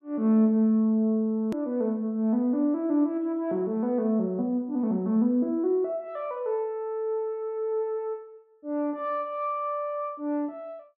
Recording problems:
hard cut with a click; at 1.5 s

